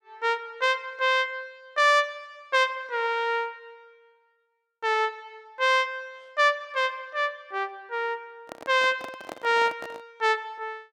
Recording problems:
handling noise; from 8.5 to 10 s; peak -8 dB vs average level

